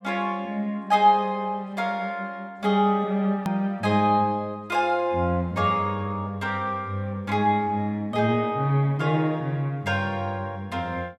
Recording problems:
hard cut with a click; at 3.5 s

